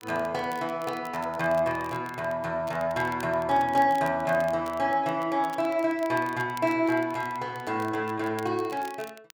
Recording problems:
crackling; vinyl, SNR 23 dB

